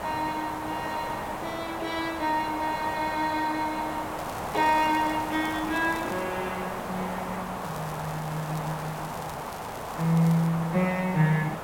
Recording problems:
hiss; SNR 6 dB
crackle; from 4 to 6 s and from 7.5 to 10 s; loose cable, SNR 20 dB

